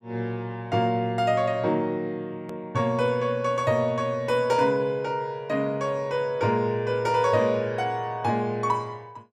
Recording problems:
hard cut with a click; at 2.5 s

